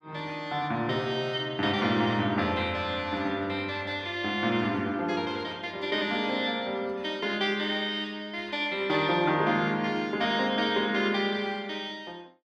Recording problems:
none

